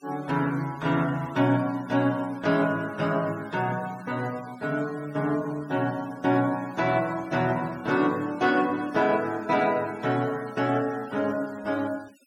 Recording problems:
denoising artefacts; signal-to-artefact ratio 22 dB

